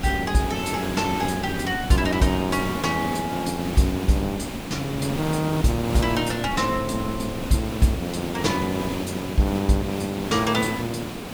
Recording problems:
hiss; slope -5 dB per octave, SNR 7 dB
wind on the microphone; below 190 Hz, SNR 16 dB

